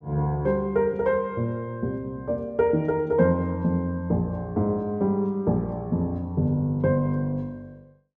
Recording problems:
none

